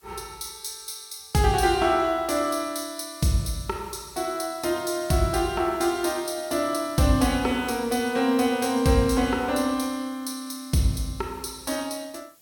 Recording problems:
background hiss; SNR 27 dB

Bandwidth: 17 kHz